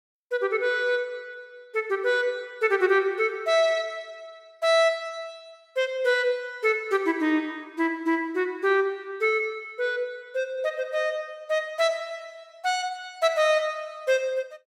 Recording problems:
none

